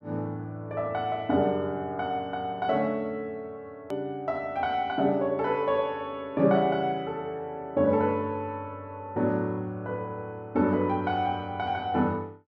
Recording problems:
click at an edit; at 4 s

